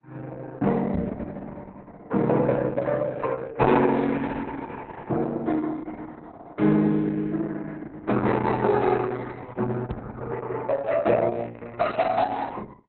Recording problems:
lossy codec; Opus, log-spectral distance 4 dB, nothing above 4.1 kHz
microphone bump; at 1 s and at 10 s; peak +1 dB vs average level

